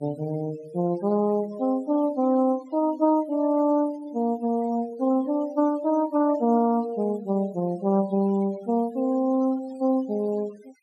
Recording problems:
denoising artefacts; signal-to-artefact ratio 23 dB

